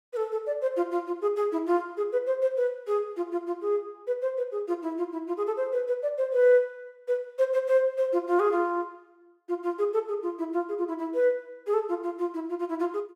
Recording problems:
none

